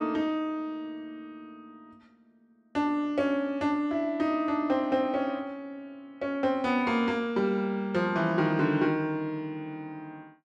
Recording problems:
none

